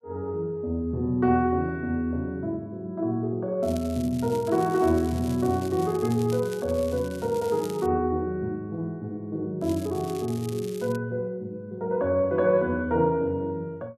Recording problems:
crackle; from 3.5 to 8 s and from 9.5 to 11 s; loose cable, SNR 19 dB

